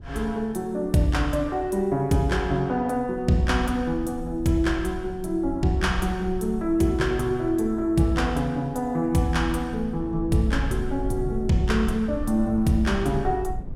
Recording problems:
wind on the microphone; below 80 Hz, SNR 13 dB

